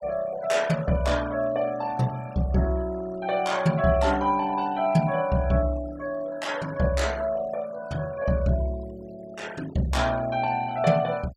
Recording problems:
denoising artefacts; signal-to-artefact ratio 21 dB

